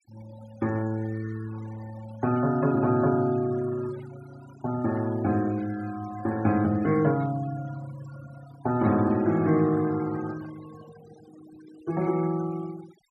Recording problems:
noise reduction artefacts; signal-to-artefact ratio 20 dB

